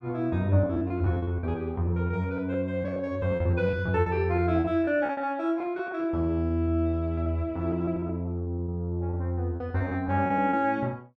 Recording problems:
lost packets; 16% of the sound replaced, filled with repeated pitch periods

